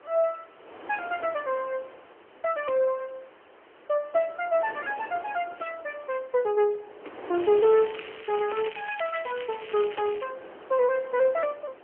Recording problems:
phone line; 300 Hz to 3.3 kHz, AMR-NB
hiss; SNR 29 dB
wind noise; below 1.1 kHz, SNR 18 dB
crackling; from 7.5 to 10 s; loose cable, SNR 15 dB

